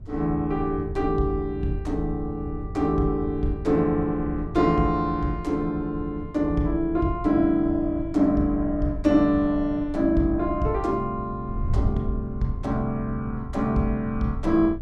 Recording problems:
wind on the microphone; below 94 Hz, SNR 11 dB

